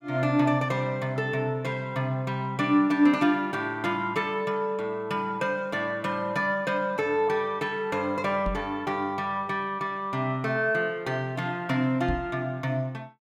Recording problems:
knock on the microphone; at 8.5 s and at 12 s; peak 0 dB vs average level

